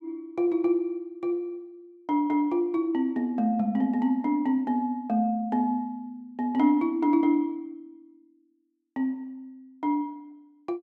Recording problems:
none

